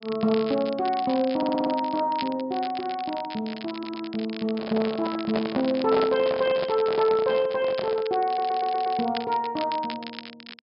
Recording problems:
treble missing; nothing above 5.5 kHz
crackling; vinyl, SNR 15 dB
audio stuttering; at 1.5 s, at 3.5 s and at 8.5 s
handling noise; from 4.5 to 8 s; peak 0 dB vs average level

